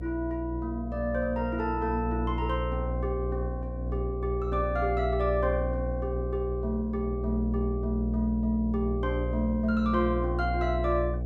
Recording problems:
hum; 60 Hz, harmonics up to 660 Hz, SNR 3 dB

